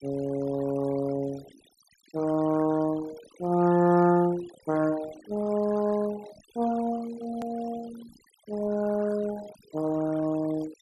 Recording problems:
noise reduction artefacts; signal-to-artefact ratio 19 dB
hard cut with a click; at 7.5 s

